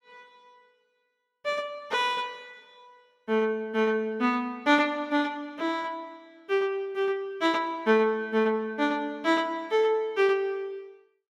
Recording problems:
none

